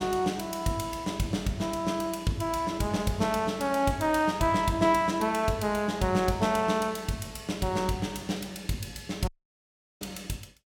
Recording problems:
dropout; at 9.5 s for 0.5 s

